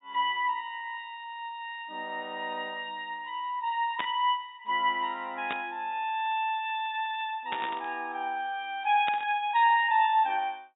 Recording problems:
treble missing; nothing above 4 kHz
static burst; 4 times, first at 4 s; peak -1 dB vs average level

